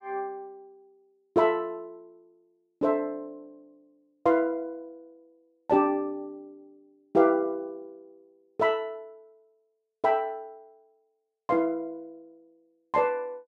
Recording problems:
none

